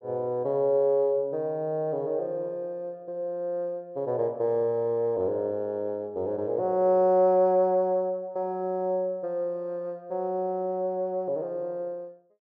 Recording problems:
none

